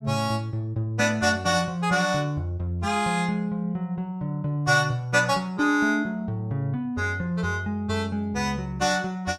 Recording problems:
none

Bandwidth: 16 kHz